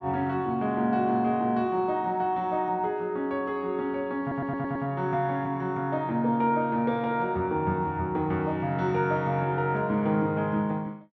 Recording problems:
audio stuttering; at 4 s

